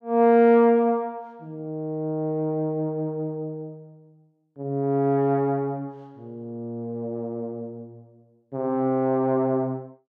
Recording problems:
none

